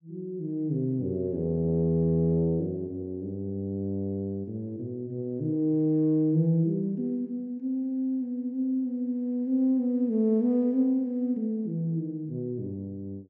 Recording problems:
none

